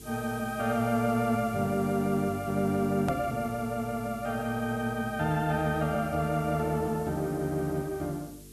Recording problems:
hum; 50 Hz, harmonics up to 450 Hz, SNR 20 dB
background hiss; slope +3 dB per octave, SNR 20 dB
hard cut with a click; at 3 s

